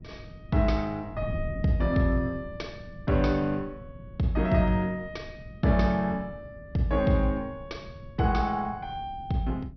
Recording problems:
treble cut off; nothing above 6 kHz
wind noise; below 170 Hz, SNR 15 dB

